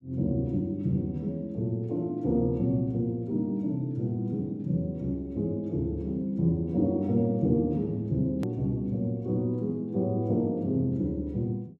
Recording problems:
hard cut with a click; at 8.5 s

